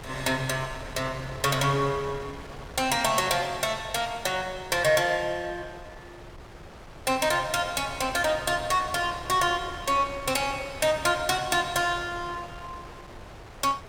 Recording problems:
wind noise; below 1.2 kHz, SNR 16 dB

